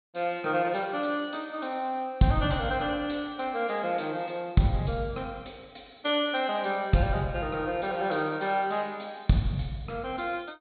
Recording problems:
treble cut off; nothing above 4.3 kHz

